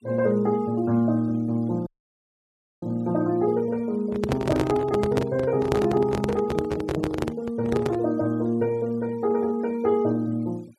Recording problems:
noise reduction artefacts; signal-to-artefact ratio 26 dB
audio cutting out; at 2 s for 1 s
microphone handling noise; from 4 to 8 s; peak +3 dB vs average level

